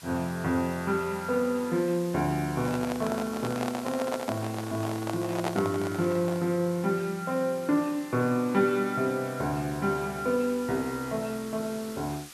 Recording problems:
hiss; SNR 17 dB
microphone handling noise; from 2.5 to 6.5 s; peak +2 dB vs average level

